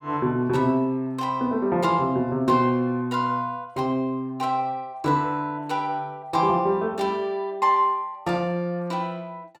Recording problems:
none

